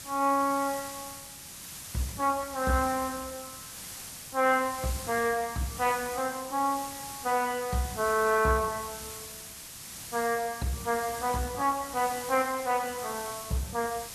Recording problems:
lossy compression; Speex, log-spectral distance 3 dB
background hiss; slope +1 dB per octave, SNR 11 dB

